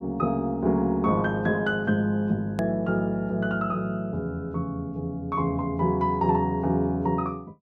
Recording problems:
click at an edit; at 2.5 s

